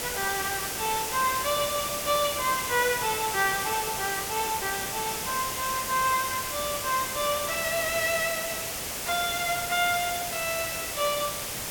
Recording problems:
hiss; slope -2 dB per octave, SNR 2 dB

